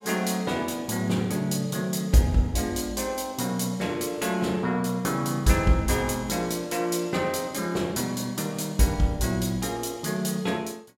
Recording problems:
none

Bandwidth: 16.5 kHz